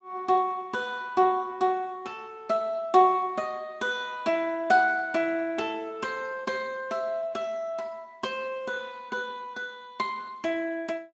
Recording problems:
lossy compression; Speex, log-spectral distance 3 dB, nothing above 7.3 kHz

